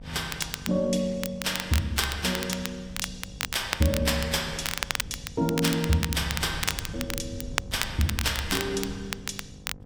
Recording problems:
hum; 50 Hz, harmonics up to 1.1 kHz, SNR 19 dB
wind noise; below 140 Hz, SNR 15 dB
crackling; vinyl, SNR 5 dB

